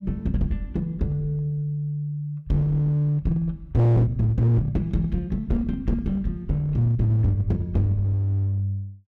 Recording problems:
distortion; hard clipping, uneven, signal-to-distortion ratio 5 dB

